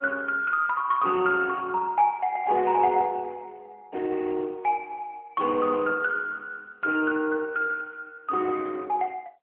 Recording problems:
phone line; 260 Hz to 3.1 kHz, AMR-NB

